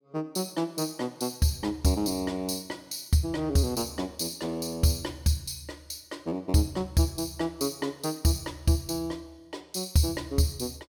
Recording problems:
none

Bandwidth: 18 kHz